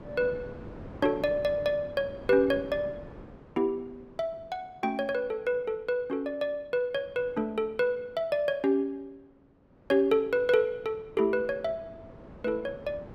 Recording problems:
wind on the microphone; below 510 Hz, SNR 19 dB

